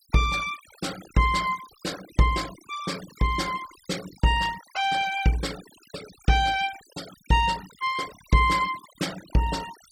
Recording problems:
noise reduction artefacts; signal-to-artefact ratio 16 dB

